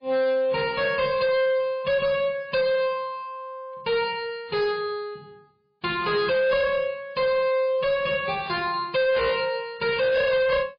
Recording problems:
codec artefacts; MP3, log-spectral distance 3 dB, nothing above 4.2 kHz
distorted audio; hard clipping, signal-to-distortion ratio 6 dB

